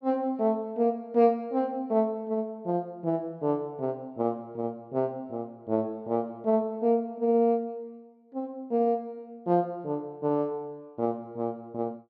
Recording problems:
none

